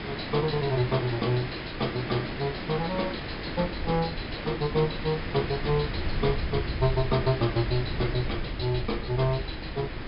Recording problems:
treble cut off; nothing above 5.5 kHz
background hiss; SNR 7 dB
low-frequency rumble; below 98 Hz, SNR 10 dB

